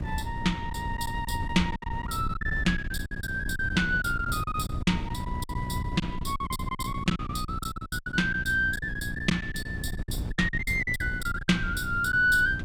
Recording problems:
mains hum; 60 Hz, harmonics up to 720 Hz, SNR 13 dB
wind noise; below 120 Hz, SNR 8 dB
packet loss; 15% of the sound replaced, filled with silence

